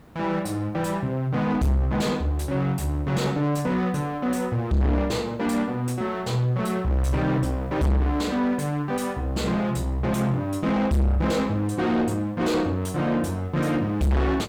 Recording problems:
distortion; soft clipping, signal-to-distortion ratio 6 dB
background hiss; slope -8 dB per octave, SNR 25 dB

